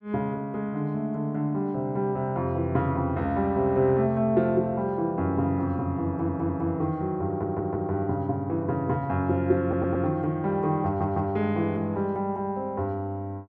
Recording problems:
audio stuttering; 4 times, first at 6 s

